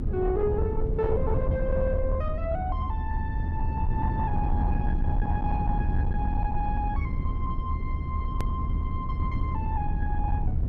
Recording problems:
distortion; soft clipping, signal-to-distortion ratio 12 dB
hum; 60 Hz, harmonics up to 300 Hz, SNR 18 dB
low-frequency rumble; below 110 Hz, SNR -3 dB
hard cut with a click; at 8.5 s

